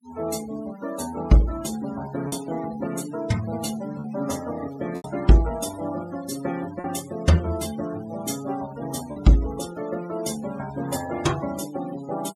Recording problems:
denoising artefacts; signal-to-artefact ratio 16 dB
packet loss; 2% of the sound replaced, filled with repeated pitch periods

